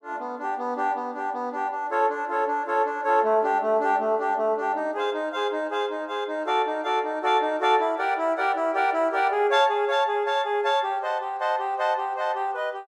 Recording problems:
none

